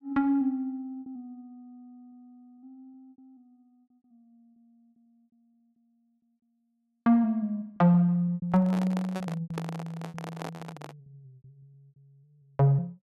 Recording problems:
packet loss; 9% of the sound replaced, filled with repeated pitch periods
handling noise; from 8.5 to 11 s; peak -5 dB vs average level

